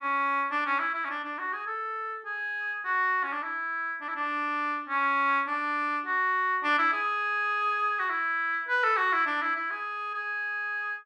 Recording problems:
none

